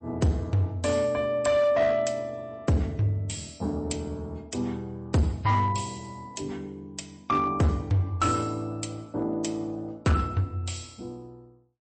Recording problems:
lossy compression; MP3, log-spectral distance 3 dB, nothing above 8.2 kHz
distorted audio; hard clipping, uneven, signal-to-distortion ratio 10 dB

